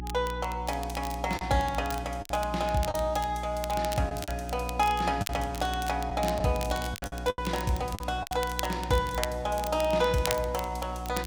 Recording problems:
hum; 60 Hz, harmonics up to 360 Hz, SNR 9 dB
crackling; vinyl, SNR 12 dB
lost packets; 6% of the sound replaced, filled with the last packet

